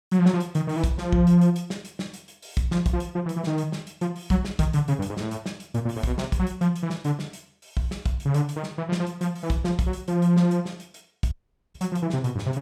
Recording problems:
dropout; at 11 s

